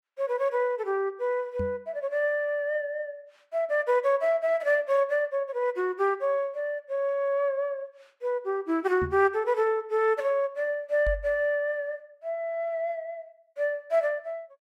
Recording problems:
microphone bump; at 1.5 s, at 9 s and at 11 s; peak -2 dB vs average level

